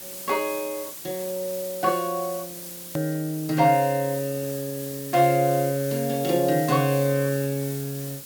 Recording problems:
background hiss; SNR 11 dB
click at an edit; at 3 s

